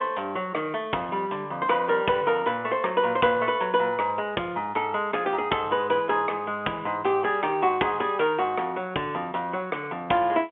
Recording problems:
phone line; 260 Hz to 3.2 kHz, G.711

